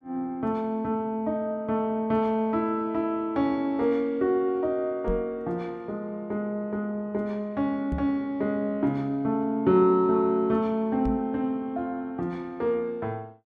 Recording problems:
knock on the microphone; at 5 s, at 8 s and at 11 s; peak +1 dB vs average level

